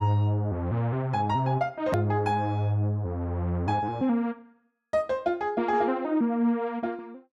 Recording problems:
hard cut with a click; at 2 s

